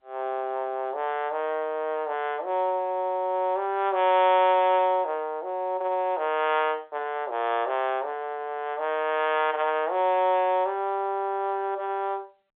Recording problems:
telephone audio; 320 Hz to 3.6 kHz, G.711

